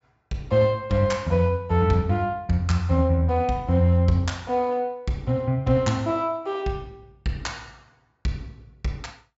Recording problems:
treble missing; nothing above 8 kHz

